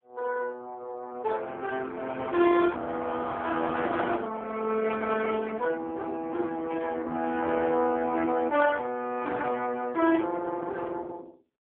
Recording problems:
phone line; 260 Hz to 3.4 kHz, AMR-NB

